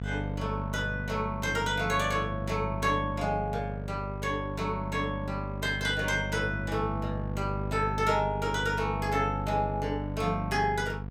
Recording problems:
hum; 50 Hz, harmonics up to 700 Hz, SNR 5 dB

